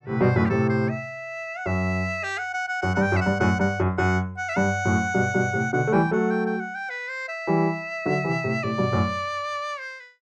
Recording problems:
none

